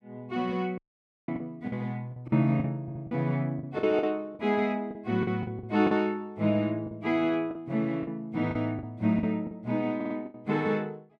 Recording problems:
packet loss; 10% of the sound replaced, filled with the last packet
audio cutting out; at 1 s for 0.5 s
audio stuttering; at 3 s and at 10 s

